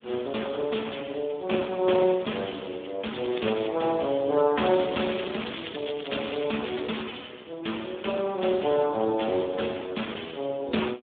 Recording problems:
phone line; 240 Hz to 3.6 kHz, Speex
crackle; at 3 s and from 4.5 to 7 s; loose cable, SNR 12 dB

